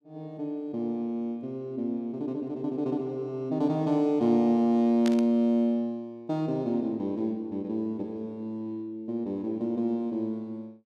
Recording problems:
burst of static; at 5 s; peak -4 dB vs average level

